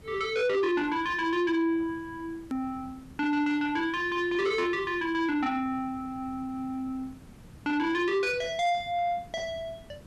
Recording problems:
distortion; soft clipping, signal-to-distortion ratio 11 dB
background hiss; slope -5 dB per octave, SNR 22 dB
hard cut with a click; at 2.5 s

